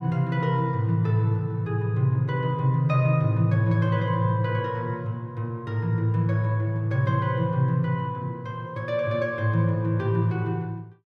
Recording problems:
none

